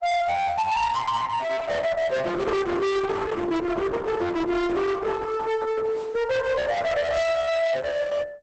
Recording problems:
lossy compression; Opus, log-spectral distance 3 dB, nothing above 8 kHz
distortion; hard clipping, uneven, signal-to-distortion ratio 6 dB

